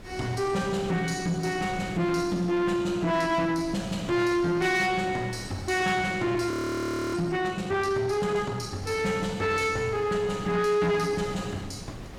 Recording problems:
distorted audio; soft clipping, signal-to-distortion ratio 11 dB
wind on the microphone; below 700 Hz, SNR 18 dB
audio freezing; at 6.5 s for 0.5 s

